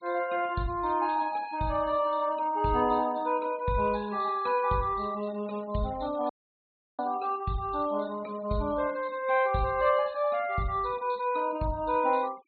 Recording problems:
treble cut off; nothing above 4.4 kHz
denoising artefacts; signal-to-artefact ratio 24 dB
audio cutting out; at 6.5 s for 0.5 s

